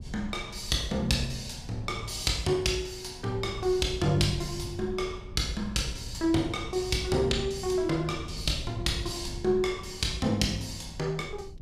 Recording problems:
wind on the microphone; below 120 Hz, SNR 14 dB

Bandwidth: 15 kHz